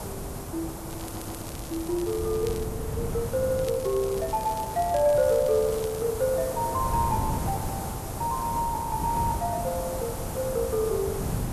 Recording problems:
hum; 50 Hz, harmonics up to 550 Hz, SNR 20 dB
background hiss; SNR 9 dB
wind noise; below 210 Hz, SNR 8 dB
crackling; from 1 to 2.5 s and from 3.5 to 6 s; loose cable, SNR 17 dB
audio stuttering; at 1 s and at 3.5 s

